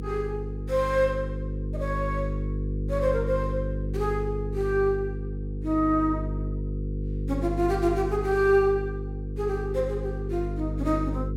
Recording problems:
hum; 50 Hz, harmonics up to 500 Hz, SNR 4 dB

